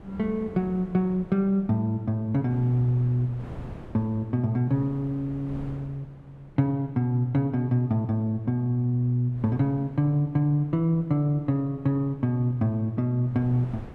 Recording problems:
wind on the microphone; below 390 Hz, SNR 20 dB

